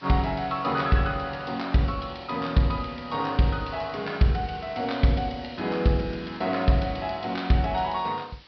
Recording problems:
treble missing; nothing above 5.5 kHz
hiss; SNR 24 dB

